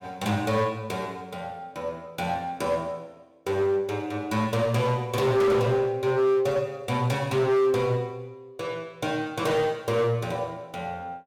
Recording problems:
distortion; hard clipping, uneven, signal-to-distortion ratio 10 dB

